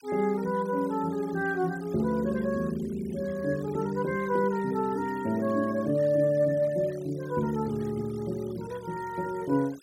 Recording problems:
denoising artefacts; signal-to-artefact ratio 23 dB

